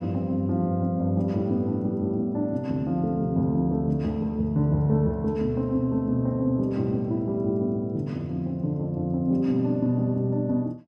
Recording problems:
none

